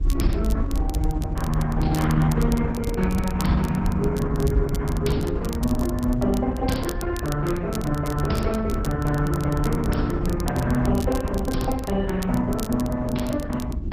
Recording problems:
lossy compression; MP2, then Opus, log-spectral distance 2 dB
low-frequency rumble; below 92 Hz, SNR 3 dB
crackle; vinyl, SNR 16 dB

